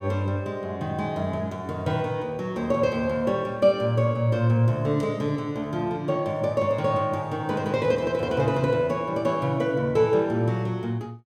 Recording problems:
none

